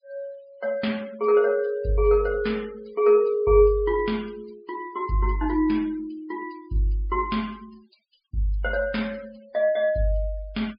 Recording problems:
treble missing; nothing above 5 kHz
noise reduction artefacts; signal-to-artefact ratio 25 dB

